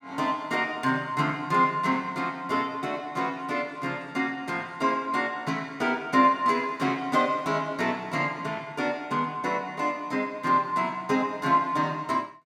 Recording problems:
none

